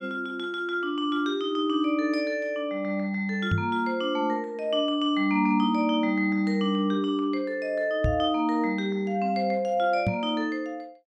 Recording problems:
microphone bump; at 3.5 s, at 8 s and at 10 s; peak +4 dB vs average level

